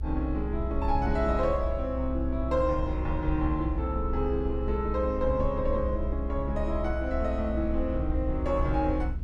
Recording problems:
rumble; below 64 Hz, strongest tone 62 Hz, SNR 3 dB

